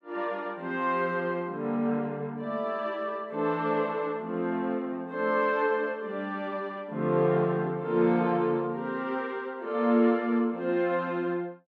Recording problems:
none

